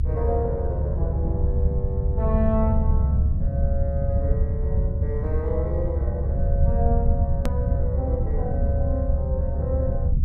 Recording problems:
low-frequency rumble; below 98 Hz, SNR -6 dB
hard cut with a click; at 7.5 s

